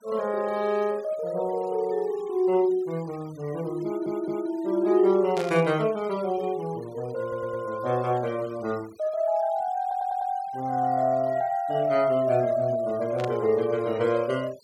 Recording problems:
noise reduction artefacts; signal-to-artefact ratio 23 dB
audio stuttering; at 4 s, at 7 s and at 10 s
static burst; at 5.5 s and at 13 s; peak -7 dB vs average level

